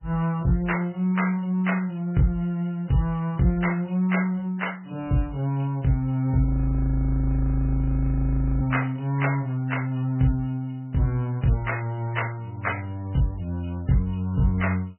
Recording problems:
codec artefacts; MP3, log-spectral distance 3 dB, nothing above 2.9 kHz
audio freezing; at 6.5 s for 2 s

